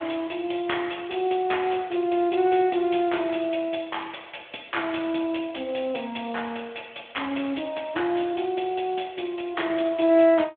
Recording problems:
phone line; 220 Hz to 3.5 kHz, Speex

